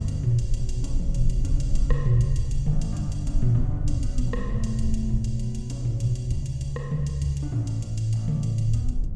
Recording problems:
rumble; below 48 Hz, strongest tone 18 Hz, SNR 5 dB

